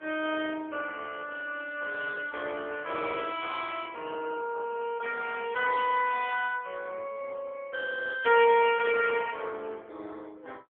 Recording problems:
phone line; 280 Hz to 3.3 kHz, AMR-NB

